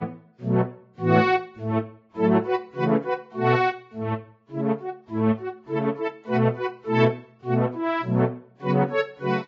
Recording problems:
lossy compression; Vorbis, then AAC, log-spectral distance 2 dB, nothing above 6.7 kHz

